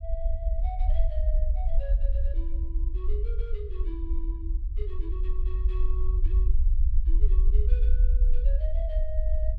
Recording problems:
low-frequency rumble; below 50 Hz, SNR -15 dB

